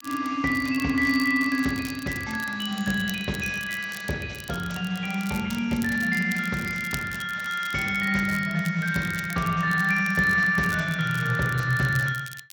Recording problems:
lossy compression; Speex, log-spectral distance 4 dB
crackle; vinyl, SNR 18 dB

